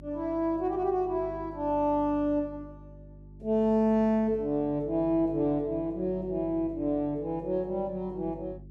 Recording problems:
electrical hum; 50 Hz, harmonics up to 400 Hz, SNR 19 dB

